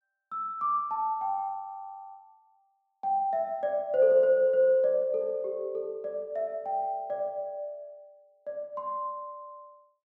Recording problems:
none

